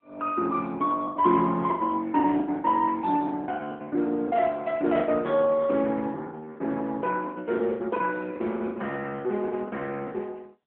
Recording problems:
phone line; 190 Hz to 3.6 kHz, AMR-NB
lost packets; 13% of the sound replaced, filled with the last packet

